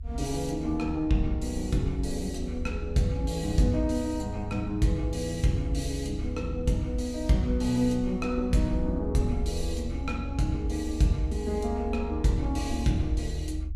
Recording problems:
rumble; below 74 Hz, SNR 8 dB

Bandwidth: 15.5 kHz